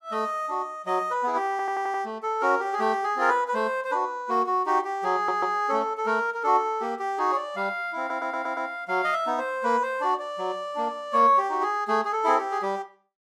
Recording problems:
audio stuttering; at 1.5 s, at 5 s and at 8 s

